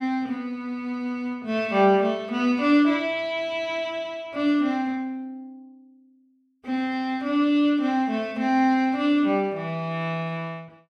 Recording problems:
none

